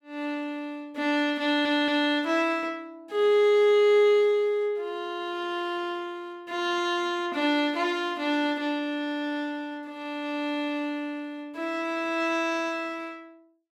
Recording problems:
audio stuttering; at 1.5 s

